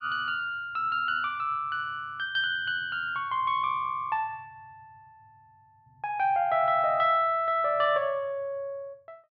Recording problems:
none

